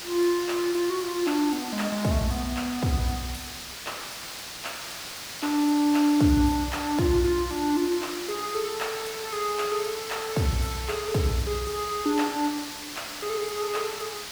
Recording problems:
hiss; slope +1 dB per octave, SNR 9 dB

